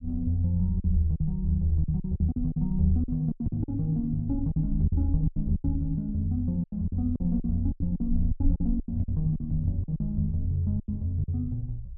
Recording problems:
low-pass filter; nothing above 4.7 kHz
rumble; below 56 Hz, SNR 9 dB
packet loss; 13% of the sound replaced, filled with silence

